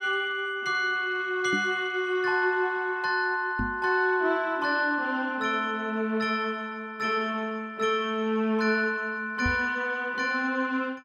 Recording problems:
knock on the microphone; at 1.5 s, at 3.5 s and at 9.5 s; peak -1 dB vs average level

